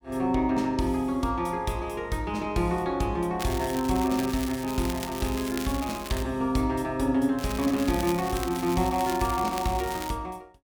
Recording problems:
crackle; from 3.5 to 6 s and from 7.5 to 10 s; loose cable, SNR 11 dB

